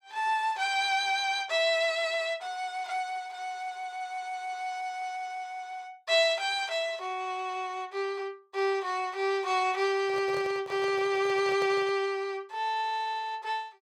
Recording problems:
handling noise; from 10 to 12 s; peak -7 dB vs average level

